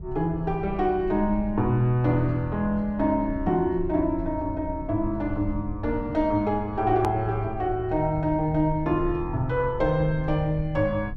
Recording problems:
rumble; below 98 Hz, SNR 12 dB
hard cut with a click; at 7 s

